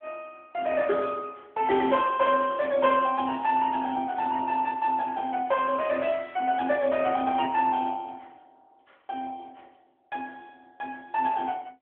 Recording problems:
telephone audio; 150 Hz to 3.5 kHz, AMR-NB

